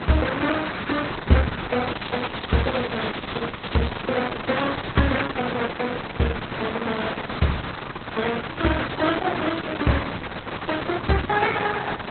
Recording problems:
codec artefacts; Vorbis, then Opus, log-spectral distance 15 dB, nothing above 4 kHz
background hiss; SNR 6 dB
crackling; from 2 to 4 s; loose cable, SNR 16 dB

